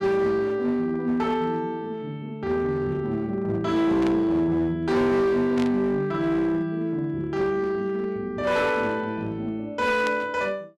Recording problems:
distortion; hard clipping, uneven, signal-to-distortion ratio 11 dB
static burst; at 4 s, at 5.5 s and at 10 s; peak -5 dB vs average level

